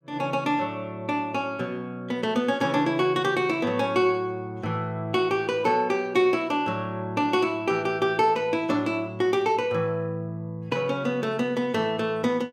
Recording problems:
none

